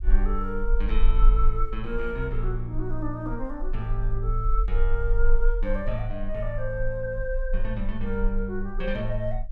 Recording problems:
rumble; below 36 Hz, strongest tone 20 Hz, SNR -1 dB

